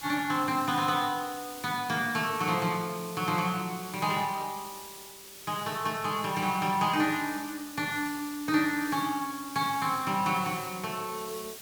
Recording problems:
background hiss; slope 0 dB per octave, SNR 13 dB

